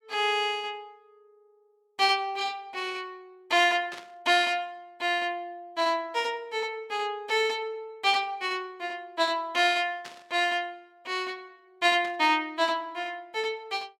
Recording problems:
burst of static; at 4 s, at 10 s and at 12 s; peak -10 dB vs average level

